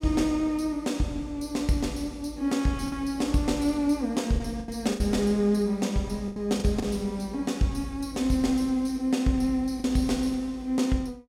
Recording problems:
lost packets; 4% of the sound replaced, filled with the last packet

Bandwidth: 16.5 kHz